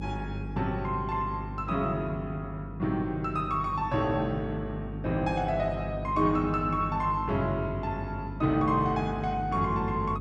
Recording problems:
hum; 50 Hz, harmonics up to 550 Hz, SNR 8 dB

